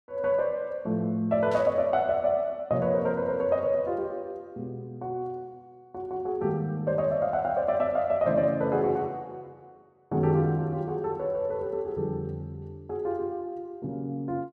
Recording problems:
burst of static; at 1.5 s; peak -13 dB vs average level

